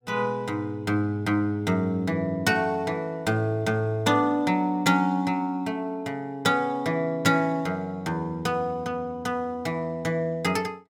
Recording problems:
none

